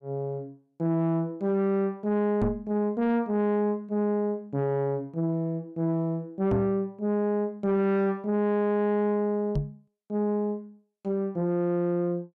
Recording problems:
distorted audio; soft clipping, signal-to-distortion ratio 10 dB
knock on the microphone; at 2.5 s, at 6.5 s and at 9.5 s; peak +4 dB vs average level

